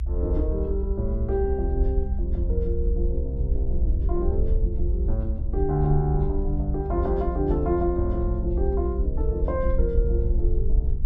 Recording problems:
low-frequency rumble; below 66 Hz, SNR -1 dB

